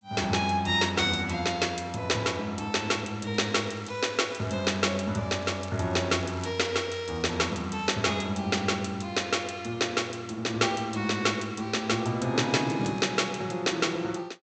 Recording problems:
low-pass filter; nothing above 8 kHz
crackle; from 3.5 to 5 s, from 5.5 to 8 s and from 12 to 13 s; loose cable, SNR 25 dB

